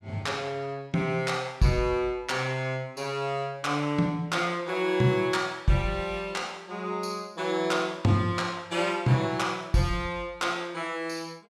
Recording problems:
none

